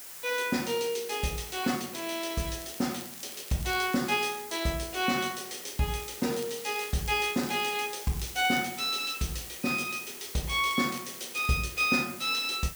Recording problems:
hiss; slope 0 dB per octave, SNR 11 dB
crackling; from 2.5 to 4.5 s, from 6 to 8.5 s and at 11 s; loose cable, SNR 19 dB

